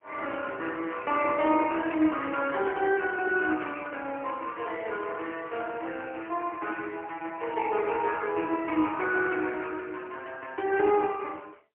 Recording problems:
phone line; 280 Hz to 3.1 kHz, AMR-NB, then MP3

